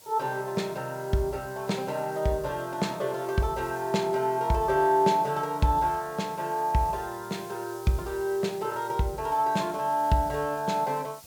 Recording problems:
background hiss; SNR 21 dB

